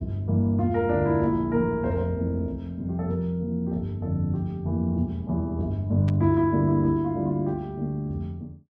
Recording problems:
burst of static; at 6 s; peak -14 dB vs average level

